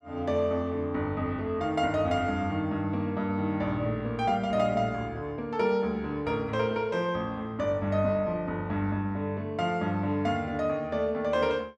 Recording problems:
none

